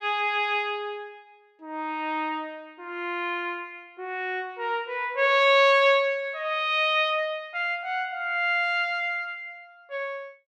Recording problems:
none

